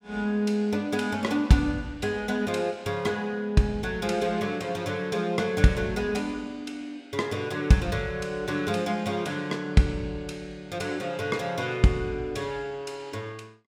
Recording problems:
none

